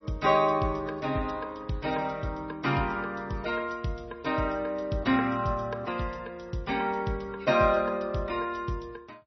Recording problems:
lossy compression; MP3, log-spectral distance 3 dB, nothing above 5.8 kHz

